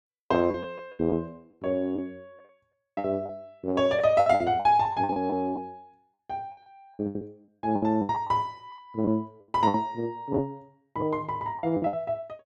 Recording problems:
lost packets; 13% of the sound replaced, filled with the last packet

